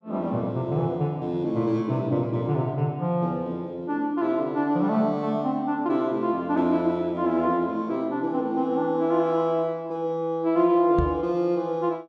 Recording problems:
knock on the microphone; at 11 s; peak +2 dB vs average level

